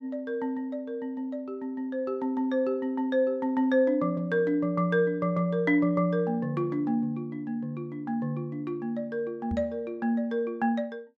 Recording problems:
knock on the microphone; at 9.5 s; peak -1 dB vs average level

